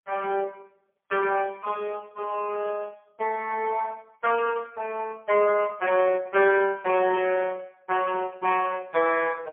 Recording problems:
telephone audio; 300 Hz to 2.9 kHz, AMR-NB, then MP3

